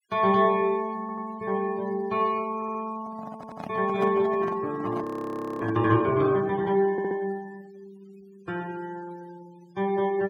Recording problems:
denoising artefacts; signal-to-artefact ratio 23 dB
stutter; 4 times, first at 1 s
microphone handling noise; from 3 to 6 s; peak -4 dB vs average level
frozen audio; at 5 s for 0.5 s

